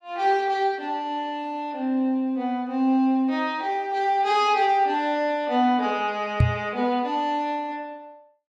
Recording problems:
knock on the microphone; at 6.5 s; peak +8 dB vs average level

